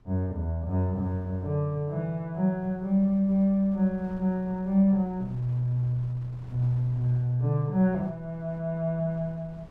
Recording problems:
wind noise; below 200 Hz, SNR 23 dB

